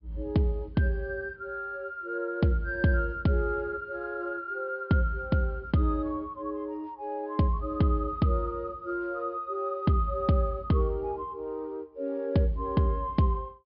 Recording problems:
treble missing; nothing above 5.5 kHz

